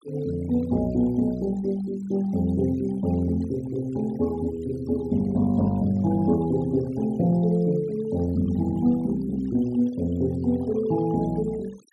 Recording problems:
noise reduction artefacts; signal-to-artefact ratio 23 dB

